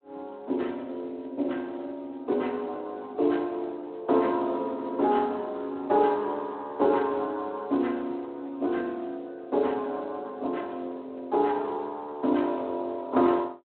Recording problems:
phone line; 260 Hz to 3.7 kHz, Speex

